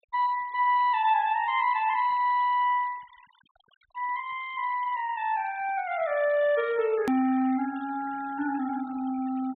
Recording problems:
treble missing; nothing above 4 kHz
denoising artefacts; signal-to-artefact ratio 23 dB
click at an edit; at 7 s

